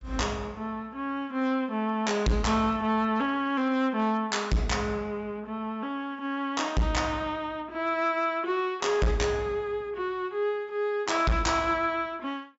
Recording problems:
treble cut off; nothing above 8 kHz
distorted audio; hard clipping, signal-to-distortion ratio 7 dB

